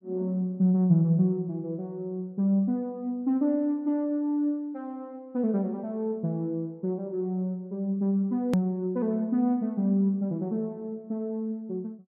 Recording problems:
hard cut with a click; at 8.5 s

